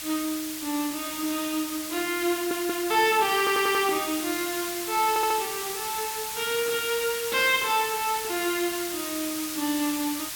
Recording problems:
background hiss; SNR 5 dB
stutter; at 2.5 s, at 3.5 s and at 5 s

